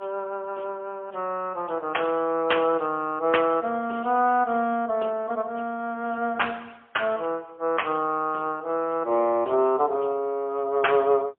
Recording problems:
telephone audio; 280 Hz to 3.3 kHz, AMR-NB, then MP3

